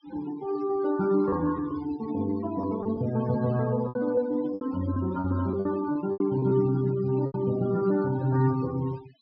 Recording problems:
treble cut off; nothing above 5.5 kHz
noise reduction artefacts; signal-to-artefact ratio 17 dB
packet loss; 7% of the sound replaced, filled with repeated pitch periods

